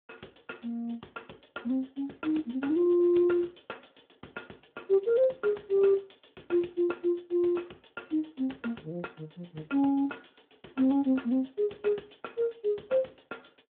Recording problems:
phone line; 170 Hz to 3.5 kHz, Speex

